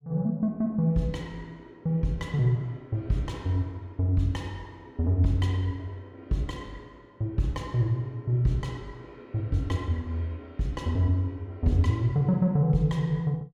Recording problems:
none

